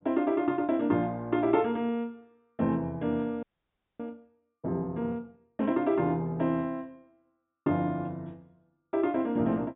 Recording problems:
treble missing; nothing above 4 kHz
audio freezing; at 3.5 s for 0.5 s

